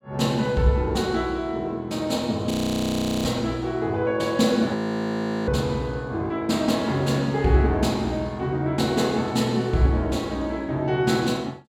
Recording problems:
frozen audio; at 2.5 s for 0.5 s and at 5 s for 0.5 s

